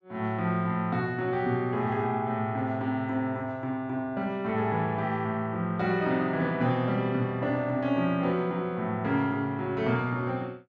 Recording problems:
none

